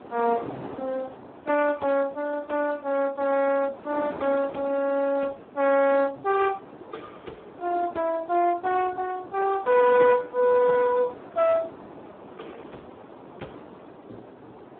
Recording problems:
telephone audio; 240 Hz to 2.6 kHz, Speex
wind on the microphone; below 860 Hz, SNR 18 dB

